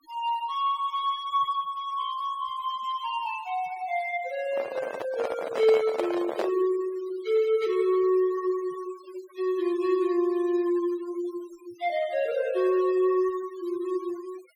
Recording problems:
noise reduction artefacts; signal-to-artefact ratio 21 dB
handling noise; from 4.5 to 6.5 s; peak +2 dB vs average level

